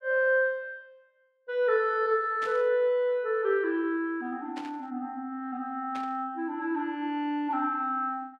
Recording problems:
static burst; at 2.5 s, at 4.5 s and at 6 s; peak -10 dB vs average level

